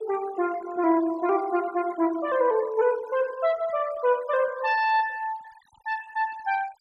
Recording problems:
denoising artefacts; signal-to-artefact ratio 21 dB

